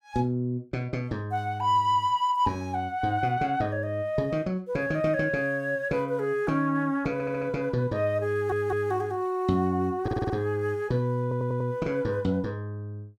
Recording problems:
stutter; 4 times, first at 7 s

